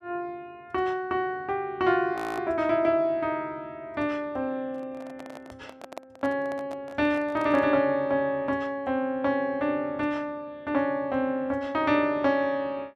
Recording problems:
audio freezing; at 2 s
microphone handling noise; from 4.5 to 7.5 s; peak -7 dB vs average level

